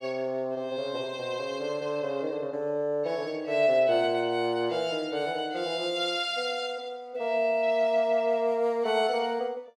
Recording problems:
none

